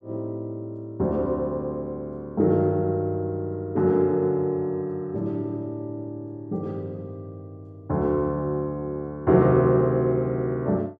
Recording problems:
none

